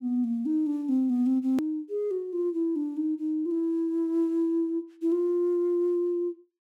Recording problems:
edit click; at 1.5 s

